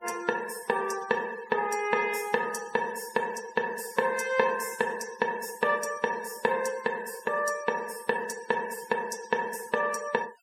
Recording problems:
denoising artefacts; signal-to-artefact ratio 17 dB

